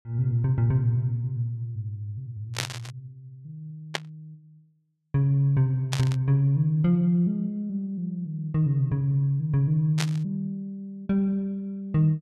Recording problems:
burst of static; 4 times, first at 2.5 s; peak +2 dB vs average level

